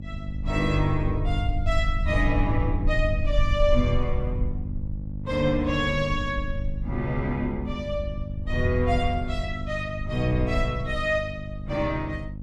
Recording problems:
electrical hum; 50 Hz, harmonics up to 550 Hz, SNR 9 dB
rumble; below 62 Hz, SNR 5 dB

